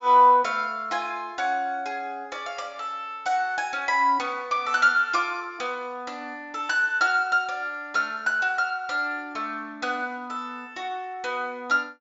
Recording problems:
low-pass filter; nothing above 8 kHz

